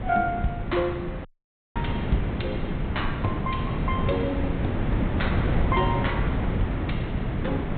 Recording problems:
low-pass filter; nothing above 4 kHz
wind on the microphone; below 300 Hz, SNR -3 dB
audio cutting out; at 1.5 s for 0.5 s

